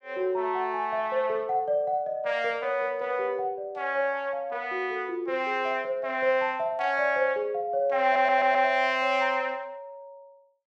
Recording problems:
stutter; at 8 s

